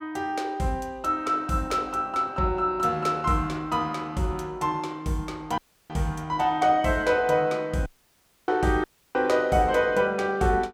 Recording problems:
dropout; at 5.5 s, at 8 s for 0.5 s and at 9 s

